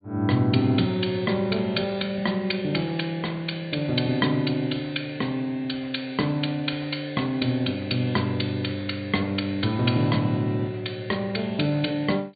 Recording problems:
low-pass filter; nothing above 4.6 kHz

